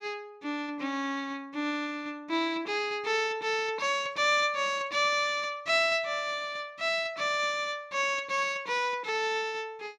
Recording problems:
none

